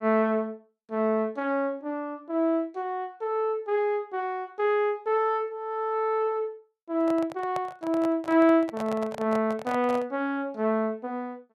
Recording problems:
microphone handling noise; from 7 to 10 s; peak -5 dB vs average level

